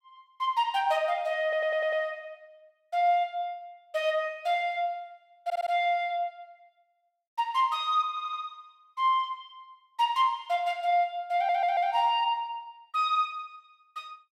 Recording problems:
audio stuttering; 4 times, first at 1.5 s

